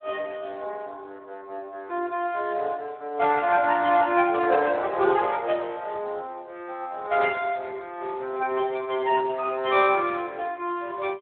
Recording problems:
telephone audio; 300 Hz to 3.5 kHz, Speex

